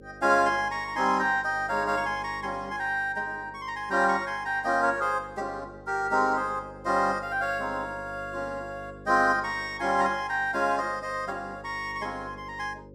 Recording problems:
hum; 50 Hz, harmonics up to 550 Hz, SNR 19 dB

